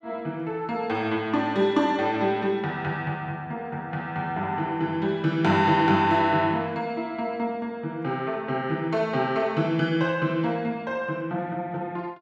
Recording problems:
none

